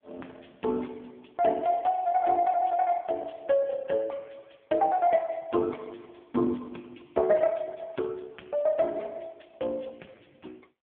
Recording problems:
telephone audio; 260 Hz to 3.4 kHz, AMR-NB

